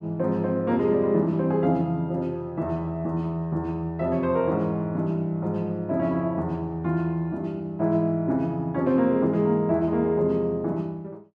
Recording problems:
none

